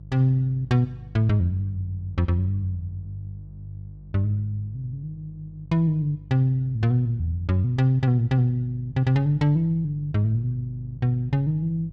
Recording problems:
electrical hum; 50 Hz, harmonics up to 350 Hz, SNR 18 dB

